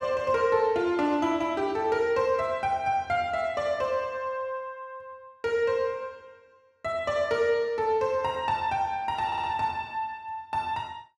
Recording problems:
audio stuttering; at 9.5 s

